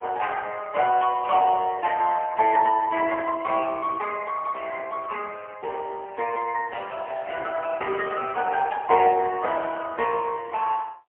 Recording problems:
phone line; 260 Hz to 2.9 kHz, AMR-NB, then MP3

